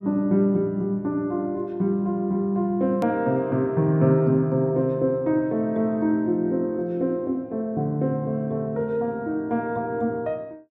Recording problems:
click at an edit; at 3 s

